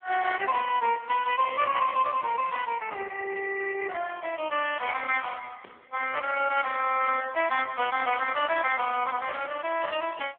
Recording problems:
telephone audio; 320 Hz to 3.2 kHz, AMR-NB

